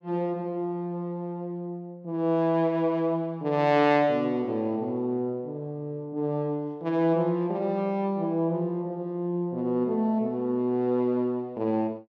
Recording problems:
none

